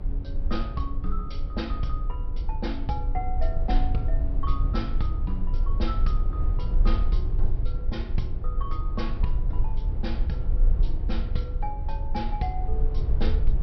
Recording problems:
treble missing; nothing above 5.5 kHz
hum; 60 Hz, harmonics up to 480 Hz, SNR 13 dB
low-frequency rumble; below 52 Hz, strongest tone 20 Hz, SNR -6 dB

